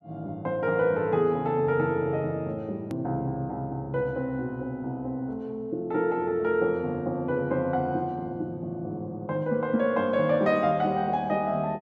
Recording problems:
click at an edit; at 3 s

